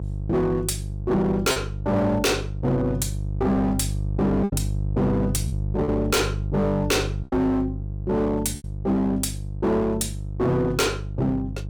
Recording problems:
distorted audio; hard clipping, uneven, signal-to-distortion ratio 8 dB
hum; 50 Hz, harmonics up to 500 Hz, SNR 6 dB
lost packets; 3% of the sound replaced, filled with repeated pitch periods

